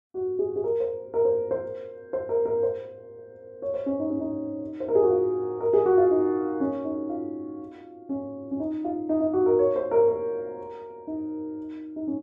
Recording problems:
none

